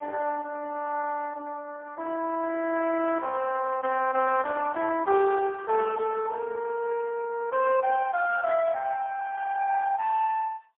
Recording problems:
phone line; 300 Hz to 2.8 kHz, AMR-NB, then MP3

